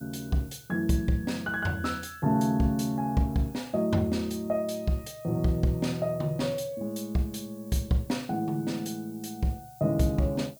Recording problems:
hiss; SNR 23 dB

